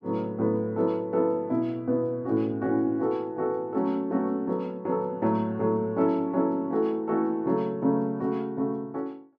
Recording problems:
none

